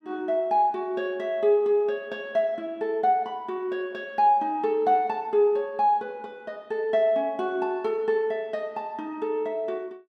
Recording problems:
none

